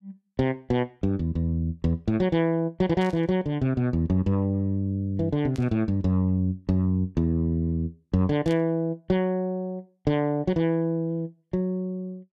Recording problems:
burst of static; at 3 s, at 5.5 s and at 8.5 s; peak -13 dB vs average level

